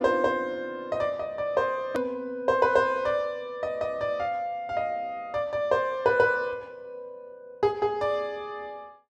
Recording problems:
edit click; at 2 s

